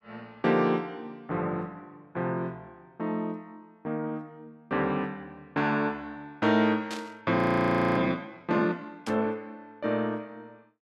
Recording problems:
burst of static; at 7 s and at 9 s; peak -5 dB vs average level
audio freezing; at 7.5 s for 0.5 s

